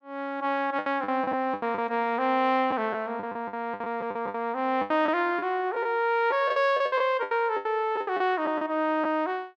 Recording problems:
lost packets; 13% of the sound replaced, filled with the last packet

